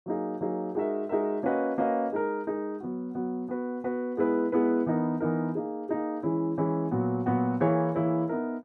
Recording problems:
none

